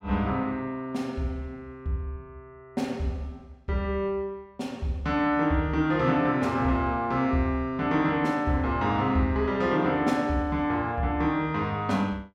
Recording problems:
none

